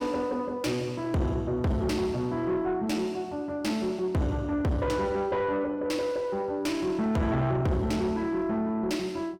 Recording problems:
distorted audio; soft clipping, signal-to-distortion ratio 7 dB

